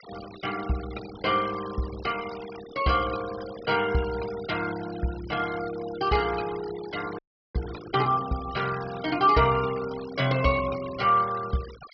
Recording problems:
treble cut off; nothing above 5.5 kHz
noise reduction artefacts; signal-to-artefact ratio 15 dB
audio freezing; at 7 s

